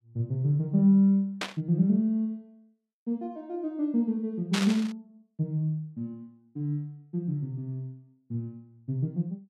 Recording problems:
burst of static; at 1.5 s and at 4.5 s; peak +1 dB vs average level

